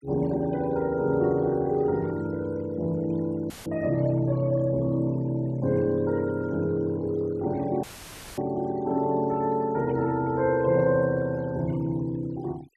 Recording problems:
denoising artefacts; signal-to-artefact ratio 25 dB
audio cutting out; at 3.5 s and at 8 s for 0.5 s; filled with static

